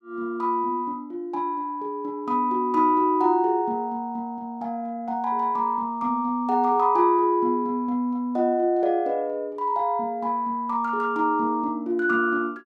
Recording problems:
none

